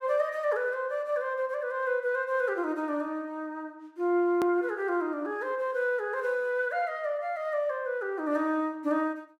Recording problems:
edit click; at 4.5 s

